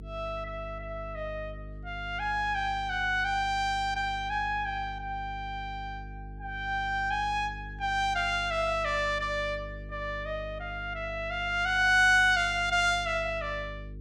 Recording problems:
electrical hum; 50 Hz, harmonics up to 450 Hz, SNR 14 dB

